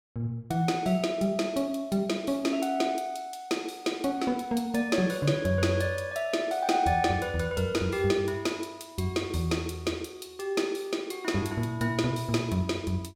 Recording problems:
none

